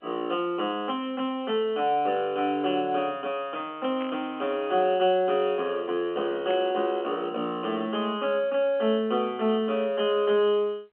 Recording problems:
phone line; 240 Hz to 3.3 kHz, G.711
burst of static; at 4 s and at 6.5 s; peak -11 dB vs average level

